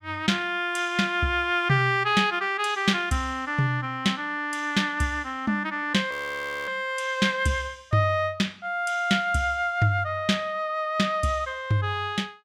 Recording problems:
audio freezing; at 6 s for 0.5 s

